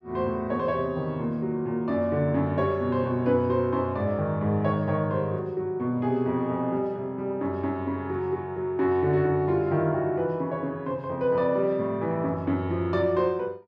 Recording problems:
none

